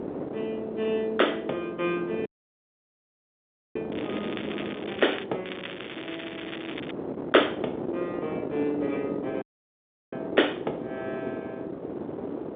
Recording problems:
phone line; 260 Hz to 3.6 kHz, G.711
wind noise; below 540 Hz, SNR 6 dB
dropout; at 2.5 s for 1.5 s and at 9.5 s for 0.5 s
crackle; from 4 to 5 s and from 5.5 to 7 s; loose cable, SNR 10 dB

